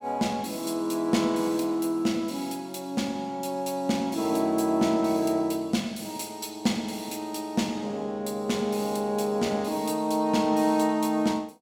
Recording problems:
none

